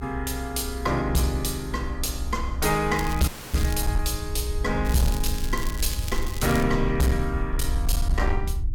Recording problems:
distortion; hard clipping, signal-to-distortion ratio 12 dB
hum; 60 Hz, harmonics up to 360 Hz, SNR 19 dB
rumble; below 64 Hz, SNR 4 dB
crackle; at 3 s and from 5 to 6.5 s; loose cable, SNR 12 dB
dropout; at 3.5 s

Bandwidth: 17 kHz